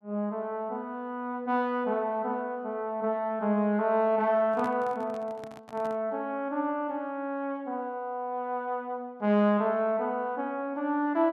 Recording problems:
microphone handling noise; from 4.5 to 6 s; peak -8 dB vs average level

